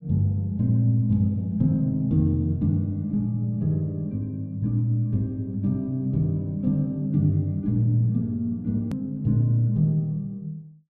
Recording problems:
hard cut with a click; at 9 s

